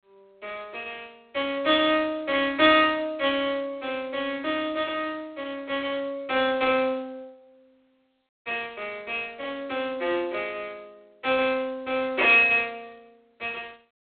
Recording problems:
phone line; 300 Hz to 3.6 kHz, G.726

